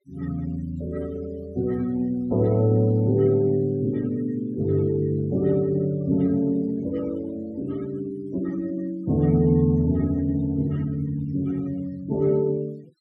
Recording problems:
noise reduction artefacts; signal-to-artefact ratio 25 dB

